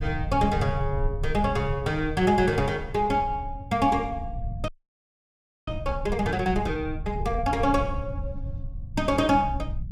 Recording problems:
rumble; below 96 Hz, SNR 9 dB
frozen audio; at 4.5 s for 1 s

